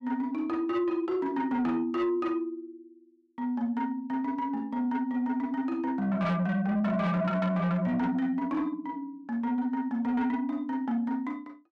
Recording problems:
distortion; soft clipping, signal-to-distortion ratio 10 dB

